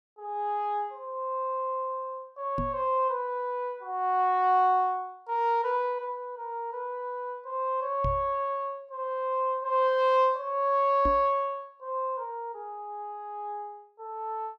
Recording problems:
microphone bump; at 2.5 s, at 8 s and at 11 s; peak 0 dB vs average level

